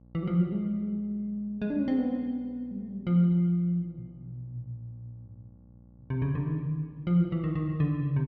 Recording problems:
hum; 60 Hz, harmonics up to 840 Hz, SNR 26 dB

